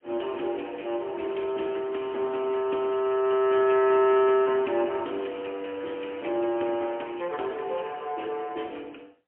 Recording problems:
phone line; 220 Hz to 3.2 kHz, AMR-NB, then MP3

